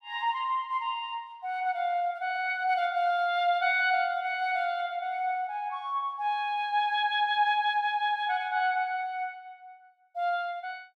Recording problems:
none

